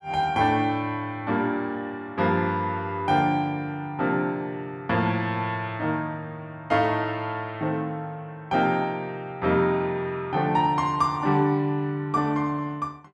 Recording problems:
none

